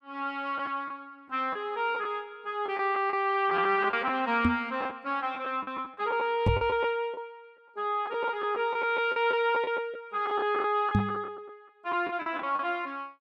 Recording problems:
packet loss; 8% of the sound replaced, filled with the last packet
microphone thump; at 4.5 s, at 6.5 s and at 11 s; peak +7 dB vs average level

